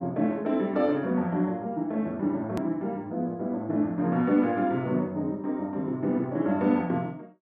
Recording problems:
edit click; at 2.5 s

